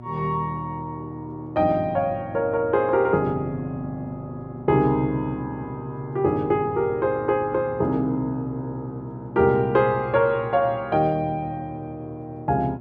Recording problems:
electrical hum; 60 Hz, harmonics up to 1.1 kHz, SNR 16 dB

